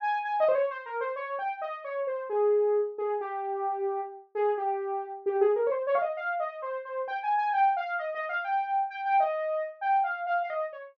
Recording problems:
treble missing; nothing above 6.9 kHz

